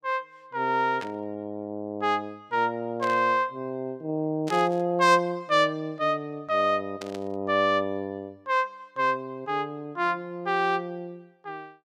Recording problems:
static burst; 4 times, first at 1 s; peak -7 dB vs average level

